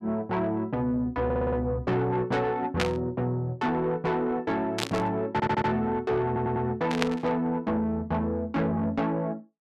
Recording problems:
distorted audio; soft clipping, signal-to-distortion ratio 12 dB
stutter; at 1.5 s, at 5.5 s and at 6.5 s
static burst; at 3 s, at 5 s and at 7 s; peak +5 dB vs average level

